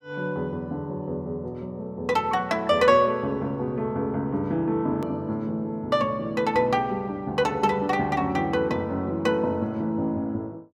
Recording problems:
hard cut with a click; at 5 s

